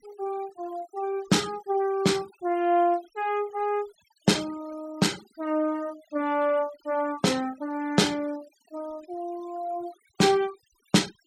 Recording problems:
noise reduction artefacts; signal-to-artefact ratio 21 dB

